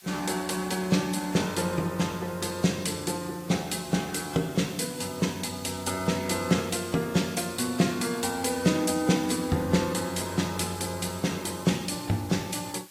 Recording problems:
lossy compression; AAC, log-spectral distance 7 dB
hiss; slope +3 dB per octave, SNR 19 dB

